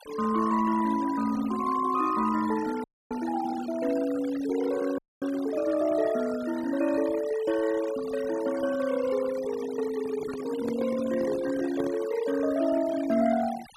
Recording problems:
noise reduction artefacts; signal-to-artefact ratio 16 dB
frozen audio; at 3 s and at 5 s
microphone handling noise; from 10 to 12 s; peak -6 dB vs average level

